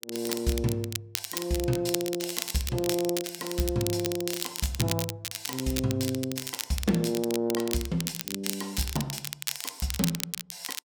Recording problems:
crackling; vinyl, SNR 4 dB

